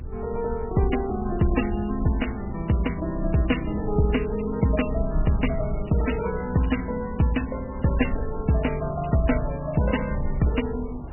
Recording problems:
lossy codec; MP3, log-spectral distance 7 dB, nothing above 2.9 kHz
hum; 60 Hz, harmonics up to 720 Hz, SNR 23 dB
rumble; below 70 Hz, SNR 9 dB
wind on the microphone; below 350 Hz, SNR 21 dB
crackle; from 4 to 7 s, from 8 to 9 s and at 9.5 s; loose cable, SNR 23 dB

